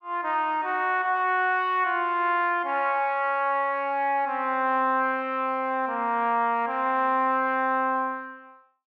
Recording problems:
none

